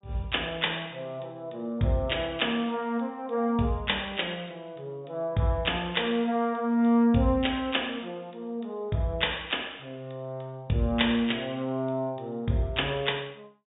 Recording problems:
treble cut off; nothing above 4 kHz

